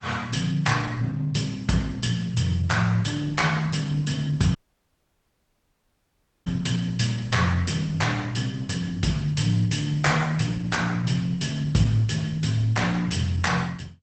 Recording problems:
lossy codec; Opus, log-spectral distance 4 dB, nothing above 8.2 kHz
audio cutting out; at 4.5 s for 2 s

